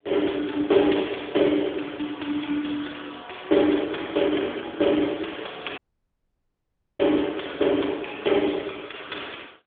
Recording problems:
phone line; 260 Hz to 3.5 kHz, AMR-NB
dropout; at 6 s for 1 s

